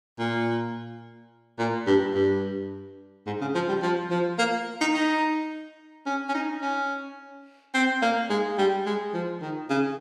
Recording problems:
none

